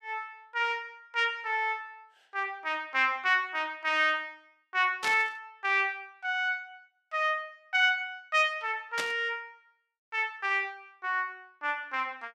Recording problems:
burst of static; at 5 s and at 9 s; peak 0 dB vs average level

